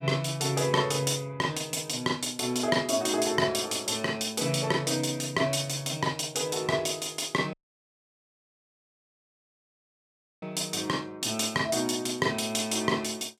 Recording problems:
audio cutting out; at 7.5 s for 3 s

